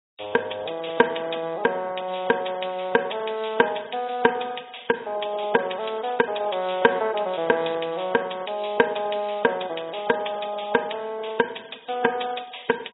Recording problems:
lossy compression; AAC, log-spectral distance 11 dB, nothing above 3.8 kHz

